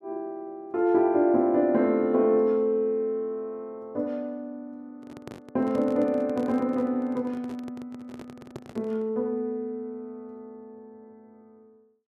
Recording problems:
microphone handling noise; from 5 to 9 s; peak -8 dB vs average level

